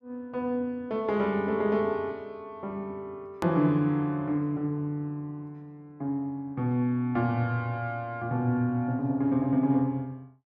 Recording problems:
edit click; at 3.5 s

